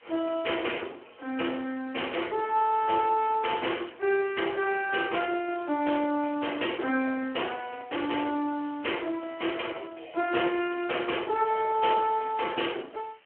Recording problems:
phone line; 260 Hz to 3.3 kHz, Speex
hiss; SNR 28 dB

